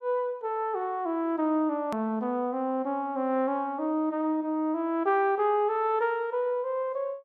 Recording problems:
hard cut with a click; at 2 s

